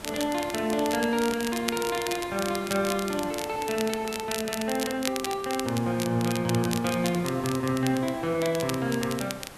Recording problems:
background hiss; slope -4 dB per octave, SNR 16 dB
crackle; vinyl, SNR 8 dB

